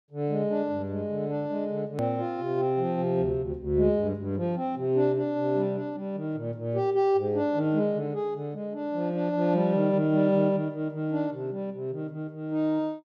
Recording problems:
edit click; at 2 s

